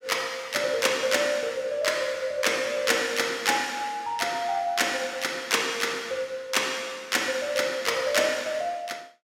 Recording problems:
none

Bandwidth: 16 kHz